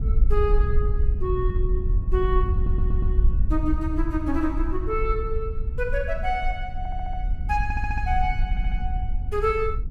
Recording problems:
wind on the microphone; below 62 Hz, SNR -2 dB
stutter; 4 times, first at 2.5 s

